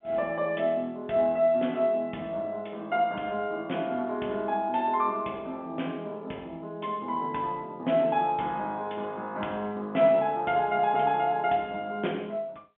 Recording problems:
telephone audio; 220 Hz to 3.5 kHz, G.711

